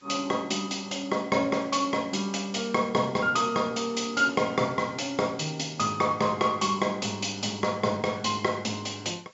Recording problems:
treble missing; nothing above 8 kHz
hiss; slope 0 dB per octave, SNR 30 dB

